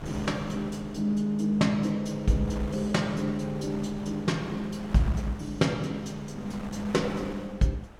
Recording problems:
wind on the microphone; below 1.1 kHz, SNR 14 dB

